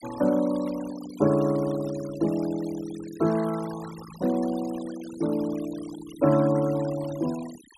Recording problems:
noise reduction artefacts; signal-to-artefact ratio 17 dB

